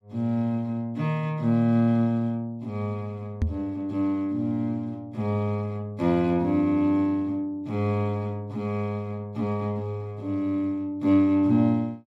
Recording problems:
knock on the microphone; at 3.5 s; peak +4 dB vs average level

